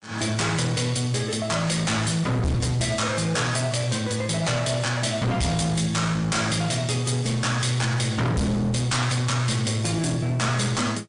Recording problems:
lossy compression; MP3, log-spectral distance 5 dB, nothing above 9.5 kHz
distortion; hard clipping, uneven, signal-to-distortion ratio 7 dB

